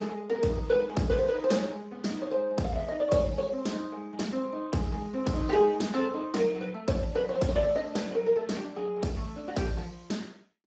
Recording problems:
codec artefacts; Speex, log-spectral distance 3 dB, nothing above 7.6 kHz

